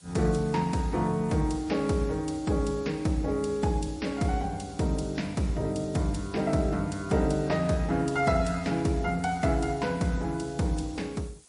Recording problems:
lossy compression; MP3, log-spectral distance 5 dB, nothing above 10.4 kHz
background hiss; SNR 26 dB

